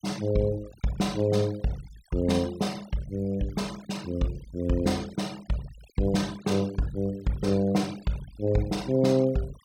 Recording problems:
noise reduction artefacts; signal-to-artefact ratio 21 dB

